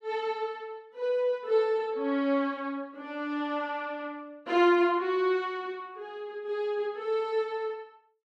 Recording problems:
none

